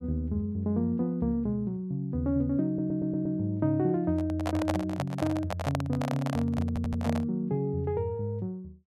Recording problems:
audio stuttering; at 2.5 s and at 6.5 s
handling noise; from 4 to 7.5 s; peak +2 dB vs average level

